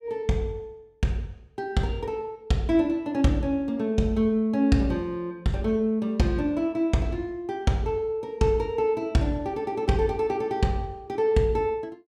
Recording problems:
none

